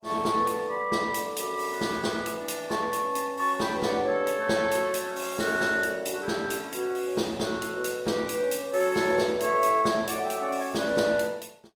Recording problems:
lossy compression; Opus, log-spectral distance 4 dB

